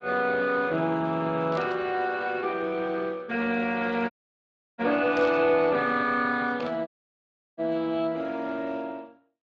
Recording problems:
lossy codec; Speex, log-spectral distance 3 dB
burst of static; at 1.5 s, at 5 s and at 6.5 s; peak -11 dB vs average level
audio cutting out; at 4 s for 0.5 s and at 7 s for 0.5 s

